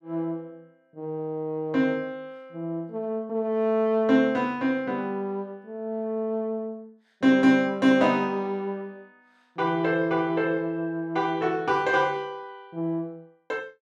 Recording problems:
none

